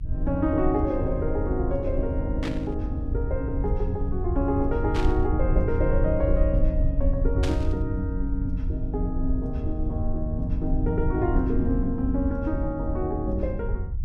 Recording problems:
hum; 60 Hz, harmonics up to 300 Hz, SNR 20 dB
rumble; below 80 Hz, SNR 1 dB
static burst; at 2.5 s, at 5 s and at 7.5 s; peak -2 dB vs average level

